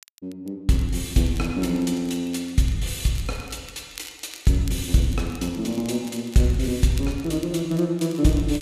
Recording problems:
crackling; vinyl, SNR 21 dB

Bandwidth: 14.5 kHz